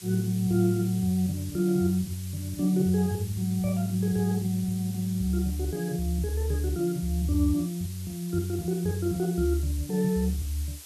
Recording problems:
hiss; slope +2 dB per octave, SNR 16 dB

